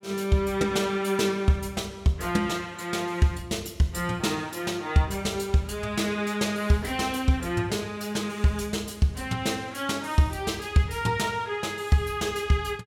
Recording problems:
none

